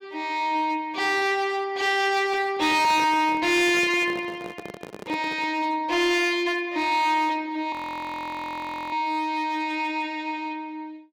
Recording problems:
distorted audio; hard clipping, uneven, signal-to-distortion ratio 10 dB
microphone handling noise; from 2.5 to 5.5 s; peak -8 dB vs average level
audio freezing; at 7.5 s for 1 s

